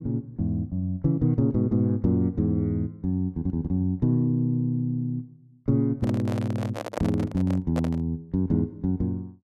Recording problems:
handling noise; from 6 to 8 s; peak 0 dB vs average level

